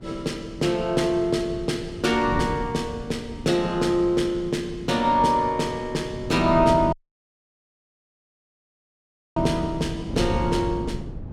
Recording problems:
wind on the microphone; below 220 Hz, SNR 11 dB
audio cutting out; at 7 s for 2.5 s

